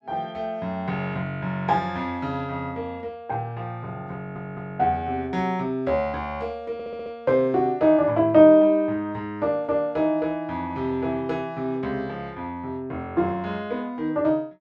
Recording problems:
audio stuttering; at 4 s and at 6.5 s

